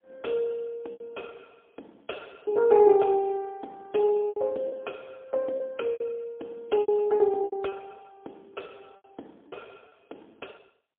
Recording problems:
telephone audio; 220 Hz to 3.4 kHz, AMR-NB, then MP3
packet loss; 7% of the sound replaced, filled with repeated pitch periods

